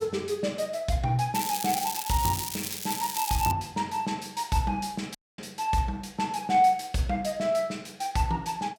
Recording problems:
crackle; from 1.5 to 3.5 s; loose cable, SNR 4 dB
dropout; at 5 s

